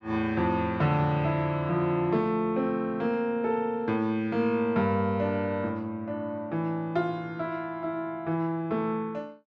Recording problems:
none

